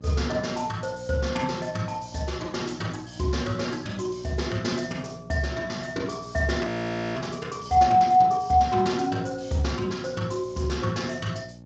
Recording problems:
codec artefacts; Speex, log-spectral distance 4 dB
electrical hum; 60 Hz, harmonics up to 900 Hz, SNR 19 dB
frozen audio; at 6.5 s

